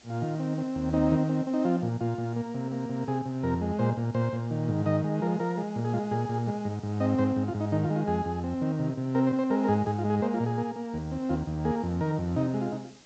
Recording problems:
low-pass filter; nothing above 8 kHz
background hiss; SNR 27 dB

